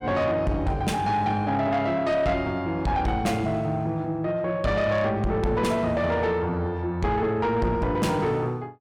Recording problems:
distortion; soft clipping, signal-to-distortion ratio 10 dB

